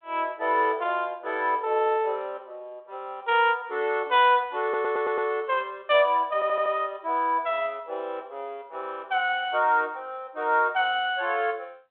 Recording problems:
telephone audio; 340 Hz to 3.6 kHz, G.726
stutter; at 4.5 s and at 6.5 s

